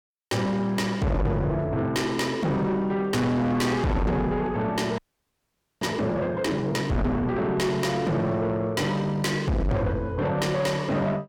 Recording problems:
distorted audio; soft clipping, signal-to-distortion ratio 6 dB
audio freezing; at 5 s for 1 s

